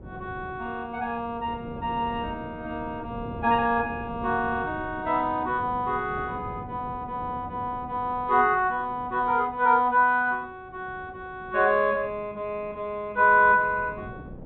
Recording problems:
low-pass filter; nothing above 4 kHz
wind on the microphone; below 370 Hz, SNR 17 dB

